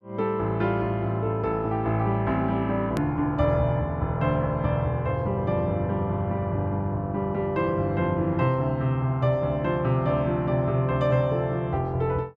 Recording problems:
edit click; at 3 s

